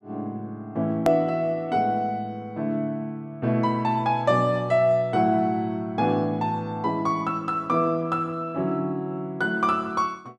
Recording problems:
hard cut with a click; at 1 s

